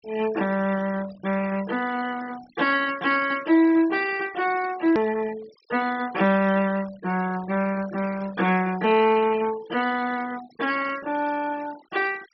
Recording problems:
treble missing; nothing above 5.7 kHz
denoising artefacts; signal-to-artefact ratio 18 dB
click at an edit; at 5 s

